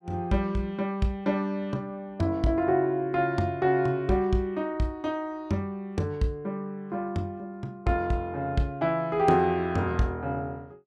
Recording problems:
none

